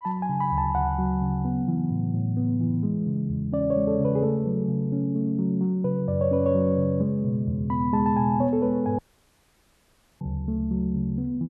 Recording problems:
audio cutting out; at 9 s for 1 s

